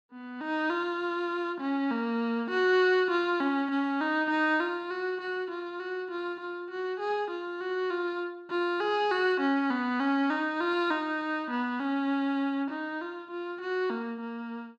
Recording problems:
none

